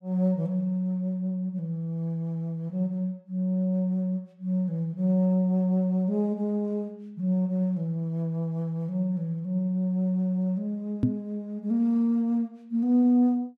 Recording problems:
microphone thump; at 11 s; peak +7 dB vs average level

